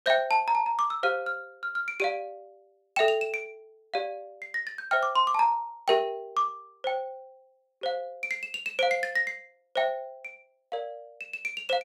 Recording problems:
none

